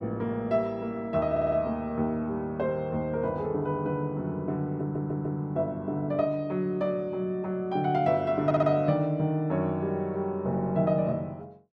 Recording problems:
stutter; at 1.5 s, at 5 s and at 8.5 s

